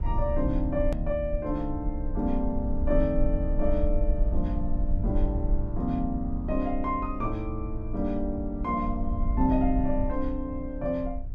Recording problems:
low-frequency rumble; below 56 Hz, SNR 3 dB
hard cut with a click; at 1 s

